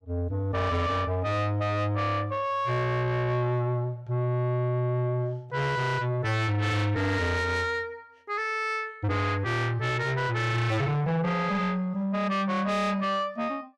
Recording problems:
distortion; soft clipping, signal-to-distortion ratio 7 dB

